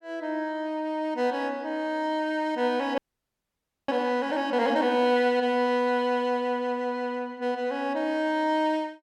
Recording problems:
frozen audio; at 3 s for 1 s

